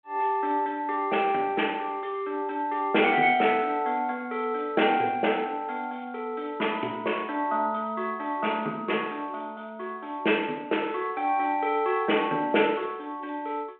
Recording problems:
telephone audio; 260 Hz to 3.4 kHz, G.726

